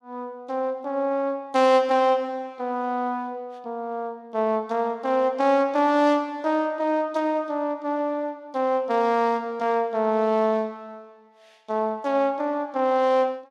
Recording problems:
none

